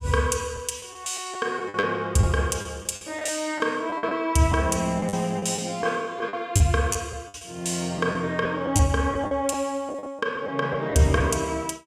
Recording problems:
packet loss; 9% of the sound replaced, filled with the last packet

